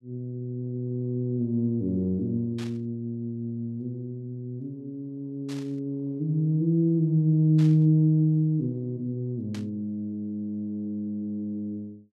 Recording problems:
static burst; 4 times, first at 2.5 s; peak -12 dB vs average level

